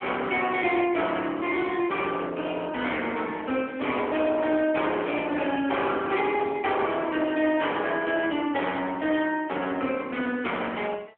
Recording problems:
telephone audio; 260 Hz to 3.3 kHz, AMR-NB
distorted audio; hard clipping, signal-to-distortion ratio 11 dB

